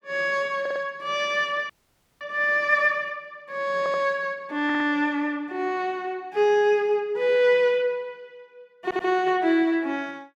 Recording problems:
stutter; 4 times, first at 0.5 s
audio freezing; at 1.5 s for 0.5 s

